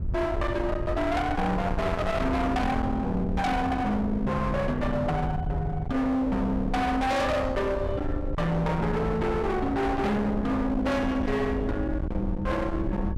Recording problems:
distorted audio; hard clipping, signal-to-distortion ratio 6 dB
wind on the microphone; below 330 Hz, SNR 5 dB

